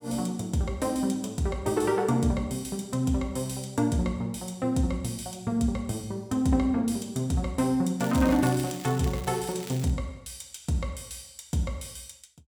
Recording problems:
crackling; from 8 to 10 s; loose cable, SNR 15 dB

